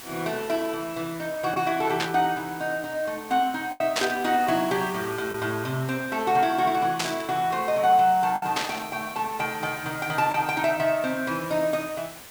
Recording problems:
background hiss; slope -2 dB per octave, SNR 16 dB
lost packets; 1.7% of the sound replaced, filled with the last packet
static burst; 4 times, first at 2 s; peak +4 dB vs average level

